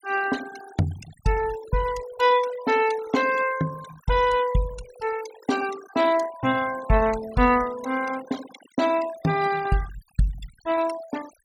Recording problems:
denoising artefacts; signal-to-artefact ratio 15 dB

